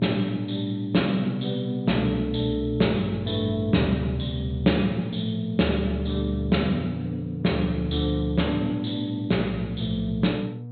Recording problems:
treble missing; nothing above 4.1 kHz
electrical hum; 60 Hz, harmonics up to 480 Hz, SNR 13 dB

